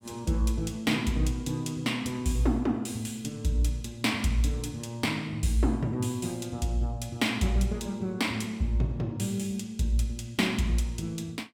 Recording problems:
none

